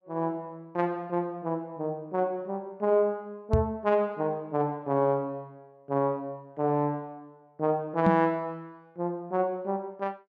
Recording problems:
microphone thump; at 3.5 s and at 8 s; peak +8 dB vs average level

